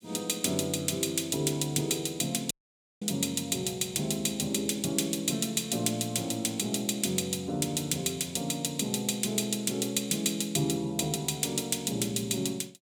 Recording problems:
audio cutting out; at 2.5 s for 0.5 s

